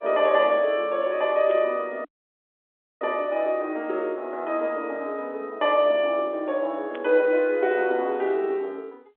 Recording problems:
phone line; 260 Hz to 3.6 kHz, G.711
burst of static; at 1.5 s and at 7 s; peak -13 dB vs average level
dropout; at 2 s for 1 s

